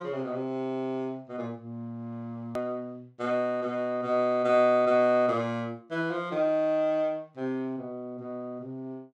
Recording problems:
edit click; at 2.5 s

